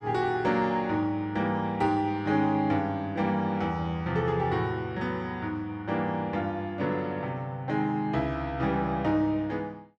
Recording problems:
none

